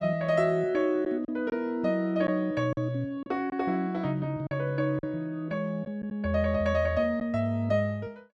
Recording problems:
lost packets; 3% of the sound replaced, filled with silence

